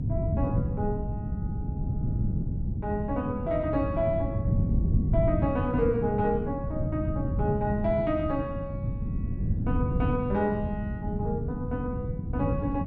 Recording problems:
electrical hum; 50 Hz, harmonics up to 300 Hz, SNR 16 dB
wind noise; below 170 Hz, SNR 0 dB

